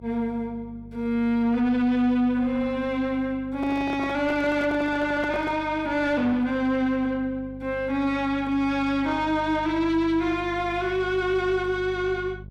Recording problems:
distorted audio; soft clipping, signal-to-distortion ratio 11 dB
electrical hum; 50 Hz, harmonics up to 450 Hz, SNR 19 dB
handling noise; from 3.5 to 5.5 s; peak -2 dB vs average level

